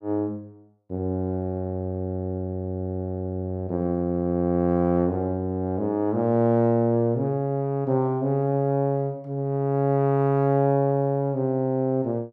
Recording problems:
none

